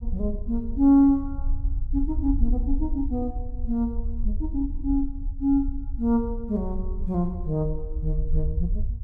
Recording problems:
rumble; below 56 Hz, SNR 6 dB

